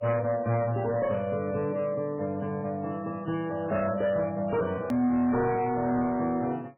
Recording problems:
lossy codec; MP3, log-spectral distance 2 dB, nothing above 18.9 kHz
distorted audio; hard clipping, signal-to-distortion ratio 12 dB
hard cut with a click; at 5 s

